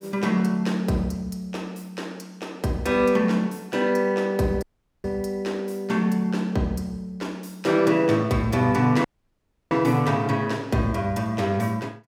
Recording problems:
dropout; at 4.5 s and at 9 s for 0.5 s

